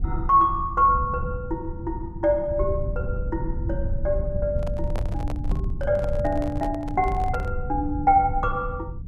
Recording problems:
rumble; below 100 Hz, SNR 6 dB
microphone handling noise; from 4.5 to 7.5 s; peak -7 dB vs average level

